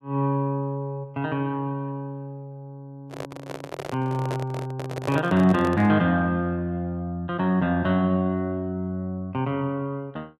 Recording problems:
microphone handling noise; from 3 to 6 s; peak -2 dB vs average level

